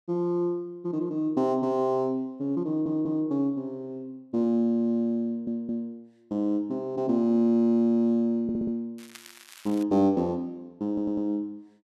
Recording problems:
audio stuttering; 4 times, first at 2.5 s
crackle; at 9 s; loose cable, SNR 21 dB

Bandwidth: 13 kHz